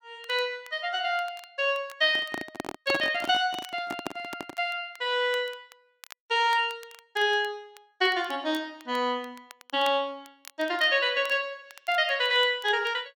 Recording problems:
crackle; vinyl, SNR 25 dB
handling noise; from 2 to 4.5 s; peak -1 dB vs average level

